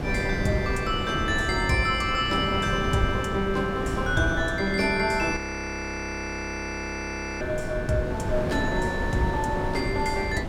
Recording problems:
wind noise; below 430 Hz, SNR 5 dB
frozen audio; at 5.5 s for 2 s

